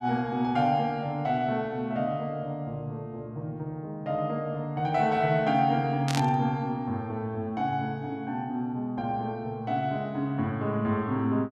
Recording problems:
static burst; at 6 s; peak 0 dB vs average level

